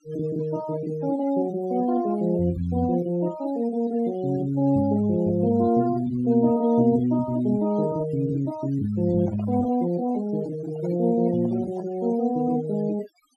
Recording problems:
noise reduction artefacts; signal-to-artefact ratio 20 dB
handling noise; from 9 to 12 s; peak -13 dB vs average level

